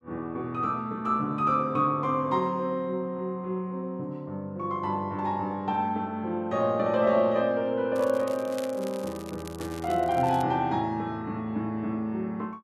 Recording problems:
crackling; from 8 to 10 s; loose cable, SNR 19 dB

